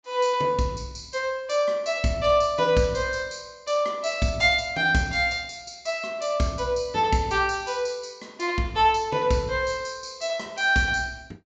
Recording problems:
low-pass filter; nothing above 8 kHz

